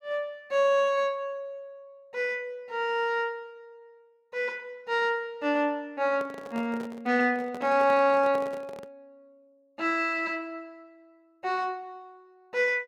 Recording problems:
microphone handling noise; from 6 to 9 s; peak -7 dB vs average level

